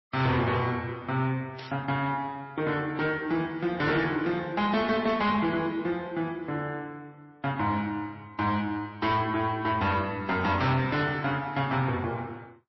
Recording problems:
codec artefacts; MP3, then MP3, log-spectral distance 2 dB, nothing above 5.7 kHz
distorted audio; soft clipping, signal-to-distortion ratio 12 dB
static burst; at 1.5 s; peak -11 dB vs average level

